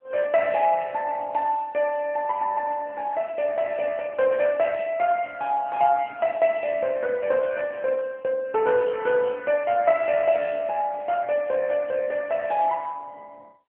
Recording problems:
phone line; 240 Hz to 3 kHz, AMR-NB

